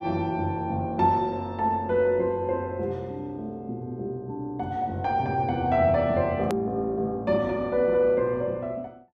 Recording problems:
hard cut with a click; at 6.5 s

